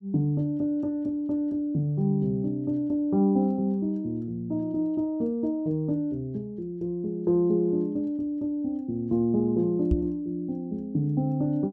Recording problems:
microphone thump; at 10 s; peak +5 dB vs average level

